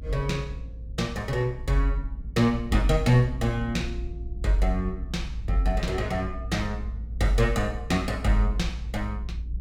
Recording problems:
low-frequency rumble; below 60 Hz, strongest tone 56 Hz, SNR 9 dB

